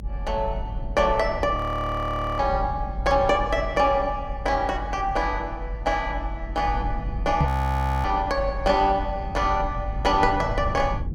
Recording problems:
low-frequency rumble; below 92 Hz, strongest tone 48 Hz, SNR 8 dB
audio freezing; at 1.5 s for 1 s and at 7.5 s for 0.5 s
microphone thump; at 7.5 s; peak +5 dB vs average level

